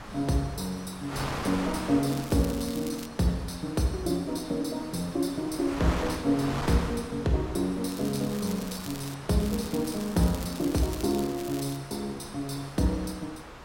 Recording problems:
wind noise; below 1.7 kHz, SNR 10 dB
crackling; at 2 s, from 8 to 9 s and from 9.5 to 12 s; loose cable, SNR 14 dB

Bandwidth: 16.5 kHz